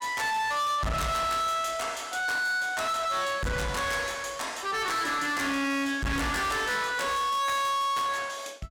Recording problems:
distorted audio; soft clipping, signal-to-distortion ratio 7 dB

